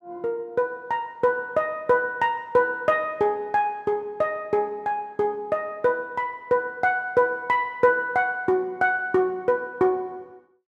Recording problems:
none

